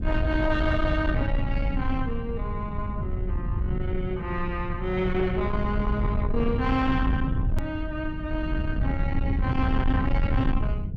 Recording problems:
distorted audio; soft clipping, signal-to-distortion ratio 11 dB
low-frequency rumble; below 120 Hz, SNR 0 dB
edit click; at 7.5 s

